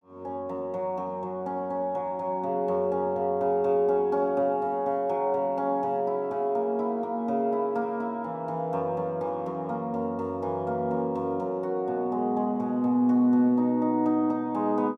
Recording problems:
none

